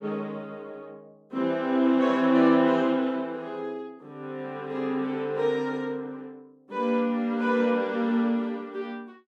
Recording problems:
none

